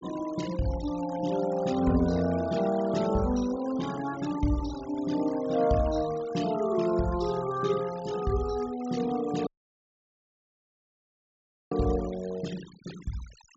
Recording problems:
treble cut off; nothing above 8 kHz
denoising artefacts; signal-to-artefact ratio 17 dB
dropout; at 9.5 s for 2 s

